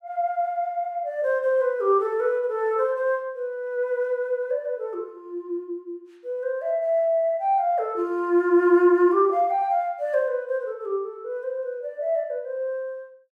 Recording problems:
none

